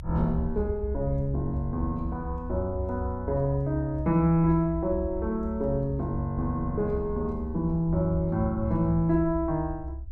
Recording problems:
rumble; below 70 Hz, strongest tone 66 Hz, SNR 8 dB

